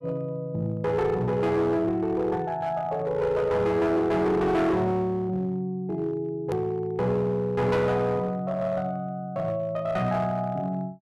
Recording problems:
distorted audio; hard clipping, uneven, signal-to-distortion ratio 10 dB
edit click; at 6.5 s

